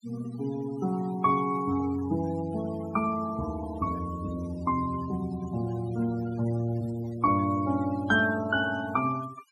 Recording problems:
noise reduction artefacts; signal-to-artefact ratio 17 dB

